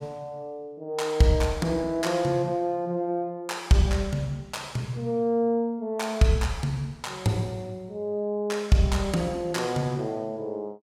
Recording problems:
none

